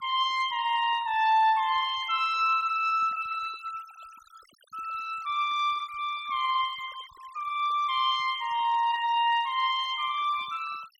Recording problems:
noise reduction artefacts; signal-to-artefact ratio 22 dB

